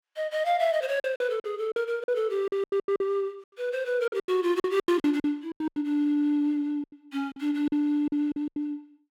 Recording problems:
lost packets; 15% of the sound replaced, filled with silence

